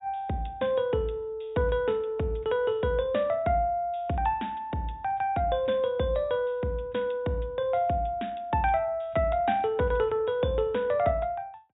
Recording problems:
low-pass filter; nothing above 4 kHz

